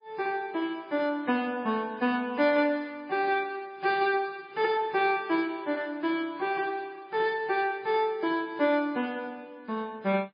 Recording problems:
lossy codec; MP3, log-spectral distance 2 dB, nothing above 5 kHz

